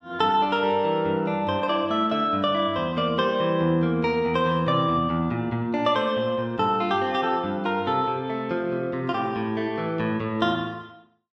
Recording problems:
none

